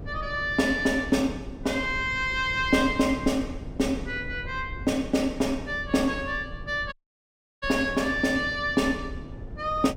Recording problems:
hum; 50 Hz, harmonics up to 550 Hz, SNR 21 dB
low-frequency rumble; below 140 Hz, SNR 14 dB
audio cutting out; at 7 s for 0.5 s

